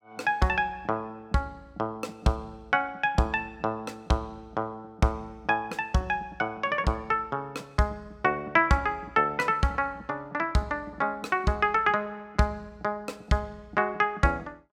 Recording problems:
none

